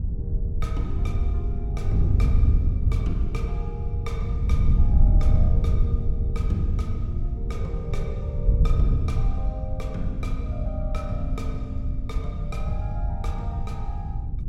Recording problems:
wind on the microphone; below 88 Hz, SNR -11 dB

